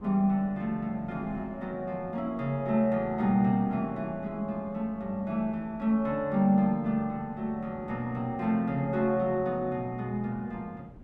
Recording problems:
wind noise; below 320 Hz, SNR 20 dB

